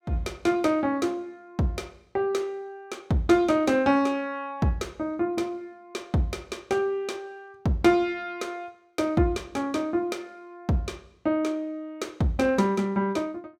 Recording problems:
none

